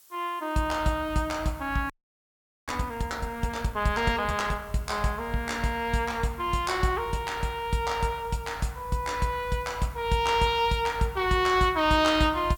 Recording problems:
hiss; slope +2 dB per octave, SNR 26 dB
audio freezing; at 2 s for 1 s

